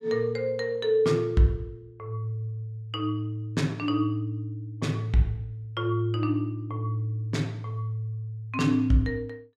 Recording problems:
none

